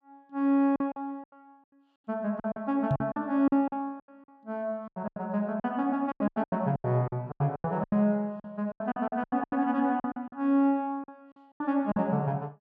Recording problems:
lost packets; 17% of the sound replaced, filled with silence
microphone thump; at 3 s; peak +4 dB vs average level

